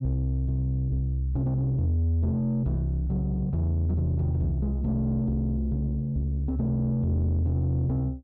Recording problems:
distorted audio; soft clipping, signal-to-distortion ratio 11 dB

